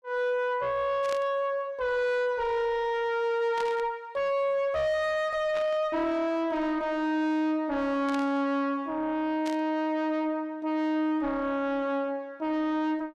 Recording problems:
distorted audio; soft clipping, signal-to-distortion ratio 6 dB
static burst; 5 times, first at 1 s; peak -7 dB vs average level

